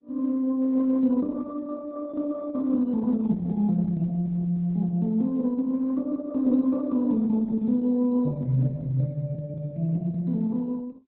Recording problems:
lossy compression; Opus, log-spectral distance 2 dB, nothing above 3.9 kHz

